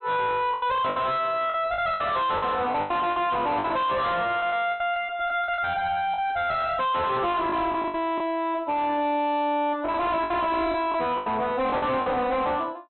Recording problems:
low-pass filter; nothing above 4.1 kHz
distortion; soft clipping, signal-to-distortion ratio 6 dB
packet loss; 10% of the sound replaced, filled with the last packet

